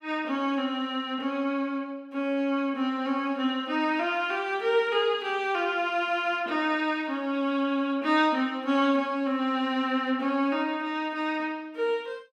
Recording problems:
none

